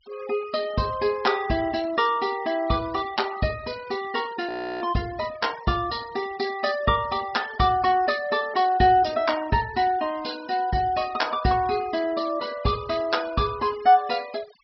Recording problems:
treble cut off; nothing above 5.5 kHz
denoising artefacts; signal-to-artefact ratio 19 dB
audio freezing; at 4.5 s

